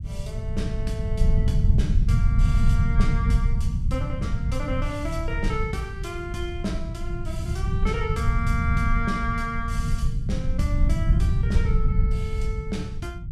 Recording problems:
rumble; below 110 Hz, SNR -6 dB

